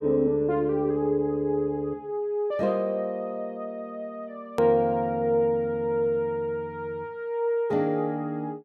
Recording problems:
edit click; at 4.5 s

